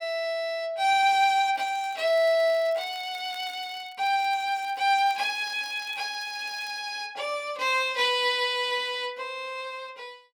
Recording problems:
crackle; from 1.5 to 4 s and from 4 to 7 s; loose cable, SNR 26 dB

